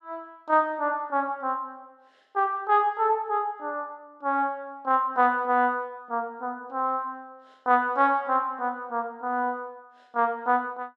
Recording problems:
none

